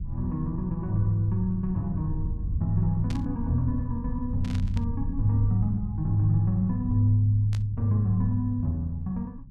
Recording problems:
low-frequency rumble; below 110 Hz, SNR 8 dB
static burst; at 3 s, at 4.5 s and at 7.5 s; peak -11 dB vs average level

